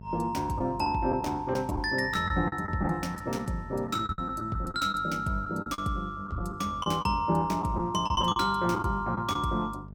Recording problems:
hum; 50 Hz, harmonics up to 650 Hz, SNR 17 dB
packet loss; 9% of the sound replaced, filled with the last packet

